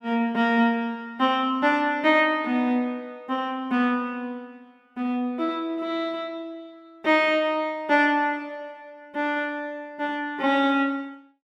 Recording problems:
none

